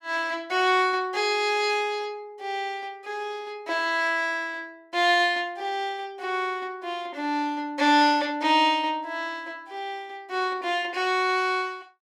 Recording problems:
none

